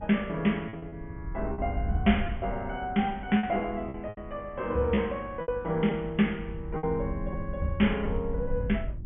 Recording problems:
treble missing; nothing above 3.3 kHz
electrical hum; 50 Hz, harmonics up to 350 Hz, SNR 19 dB
wind on the microphone; below 82 Hz, SNR 9 dB
packet loss; 6% of the sound replaced, filled with repeated pitch periods

